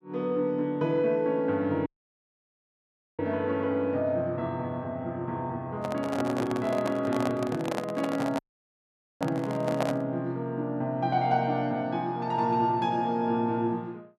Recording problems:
audio cutting out; at 2 s for 1.5 s and at 8.5 s for 1 s
handling noise; from 6 to 10 s; peak +2 dB vs average level

